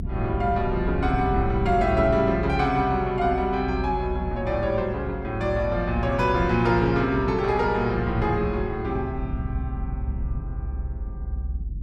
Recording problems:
rumble; below 90 Hz, SNR 8 dB

